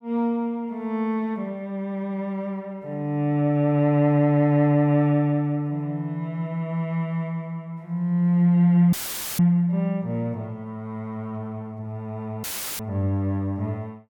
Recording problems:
audio cutting out; at 9 s and at 12 s; filled with static

